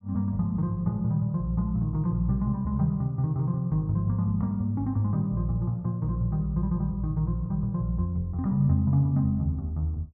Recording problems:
none

